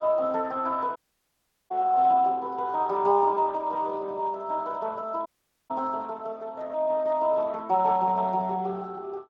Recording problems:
lossy compression; Speex, log-spectral distance 2 dB
audio cutting out; at 1 s for 0.5 s and at 5.5 s

